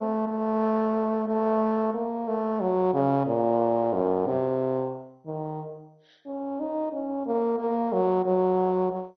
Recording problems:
lossy compression; MP2, log-spectral distance 2 dB, nothing above 5.7 kHz

